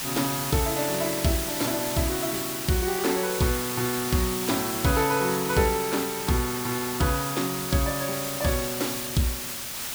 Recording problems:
hiss; slope 0 dB per octave, SNR 3 dB

